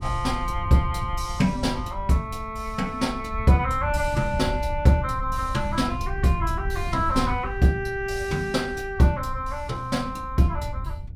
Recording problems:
wind on the microphone; below 86 Hz, SNR 9 dB

